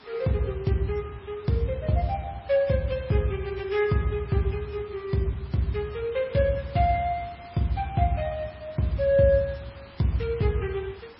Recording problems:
lossy codec; MP3, log-spectral distance 5 dB
hiss; SNR 22 dB

